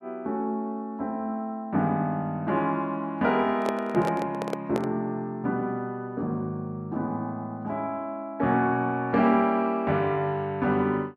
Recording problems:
handling noise; from 3.5 to 5 s; peak 0 dB vs average level

